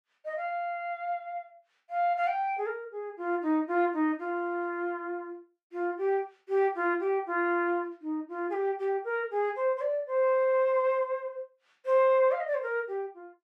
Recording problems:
none

